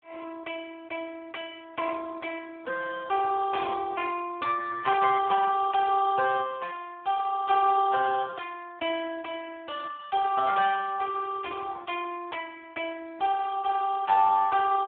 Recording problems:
phone line; 340 Hz to 2.1 kHz, Speex

